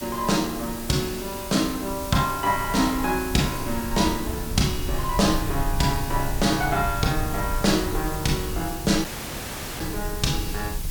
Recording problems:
hiss; slope +2 dB per octave, SNR 11 dB
low-frequency rumble; below 88 Hz, SNR 9 dB
dropout; at 9 s for 1 s

